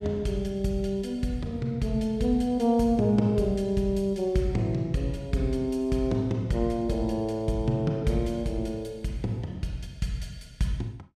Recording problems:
none

